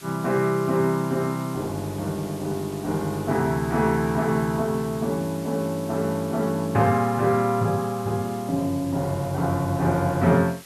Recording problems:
hiss; slope 0 dB per octave, SNR 19 dB

